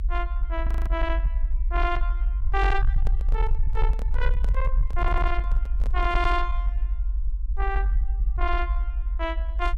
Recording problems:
distorted audio; soft clipping, signal-to-distortion ratio 12 dB
rumble; below 52 Hz, SNR -3 dB
frozen audio; at 0.5 s
microphone handling noise; from 3 to 6 s; peak -5 dB vs average level
audio stuttering; at 5 s

